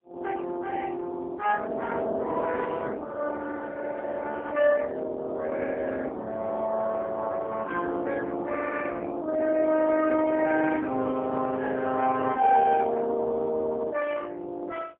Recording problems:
telephone audio; 220 Hz to 3.5 kHz, AMR-NB, then MP3

